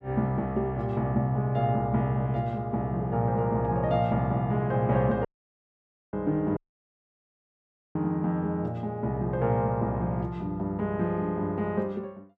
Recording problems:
audio cutting out; at 5.5 s for 1 s and at 6.5 s for 1.5 s

